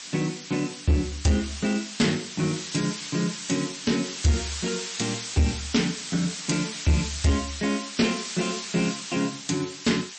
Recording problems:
lossy codec; MP3, log-spectral distance 17 dB, nothing above 8.2 kHz
distortion; soft clipping, signal-to-distortion ratio 11 dB
hiss; slope +4 dB per octave, SNR 7 dB

